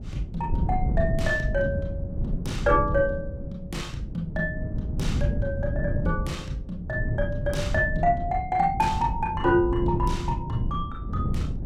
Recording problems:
wind on the microphone; below 150 Hz, SNR 3 dB

